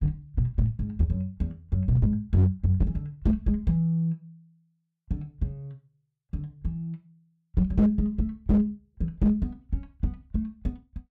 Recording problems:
distorted audio; hard clipping, signal-to-distortion ratio 10 dB

